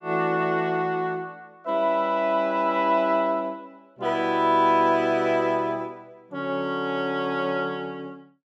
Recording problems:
none

